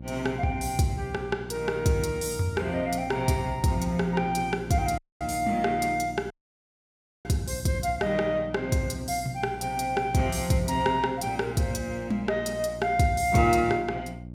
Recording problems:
hum; 60 Hz, harmonics up to 600 Hz, SNR 15 dB
audio cutting out; at 5 s and at 6.5 s for 1 s

